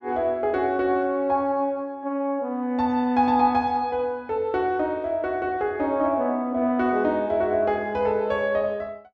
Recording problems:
none

